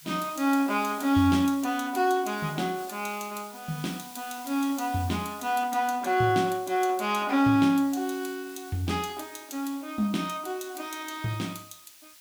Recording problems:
hiss; slope +4 dB per octave, SNR 18 dB

